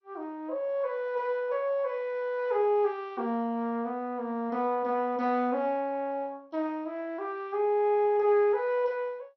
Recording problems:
lossy compression; MP2, log-spectral distance 2 dB

